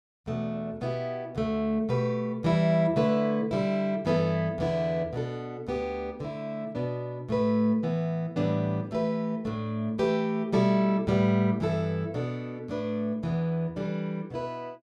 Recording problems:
none

